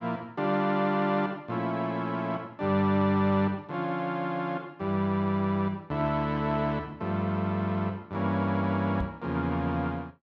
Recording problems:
knock on the microphone; at 9 s; peak -2 dB vs average level

